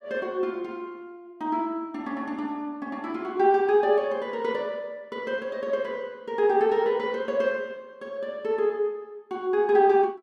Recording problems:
none

